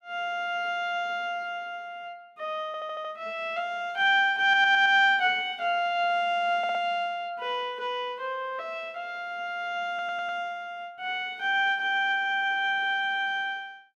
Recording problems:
stutter; 4 times, first at 2.5 s

